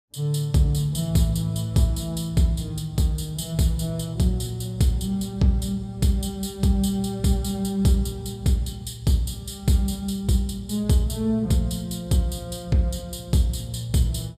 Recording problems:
none

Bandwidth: 14.5 kHz